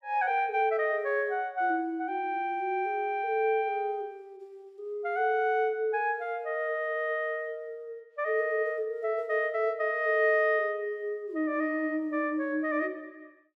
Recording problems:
none

